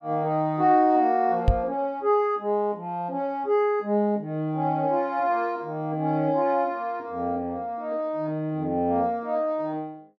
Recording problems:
knock on the microphone; at 1.5 s; peak +7 dB vs average level

